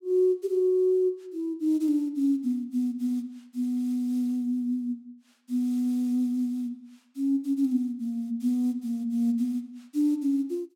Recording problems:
none

